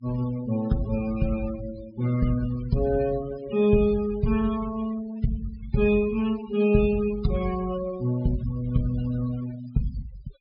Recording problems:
low-pass filter; nothing above 5.5 kHz
noise reduction artefacts; signal-to-artefact ratio 16 dB

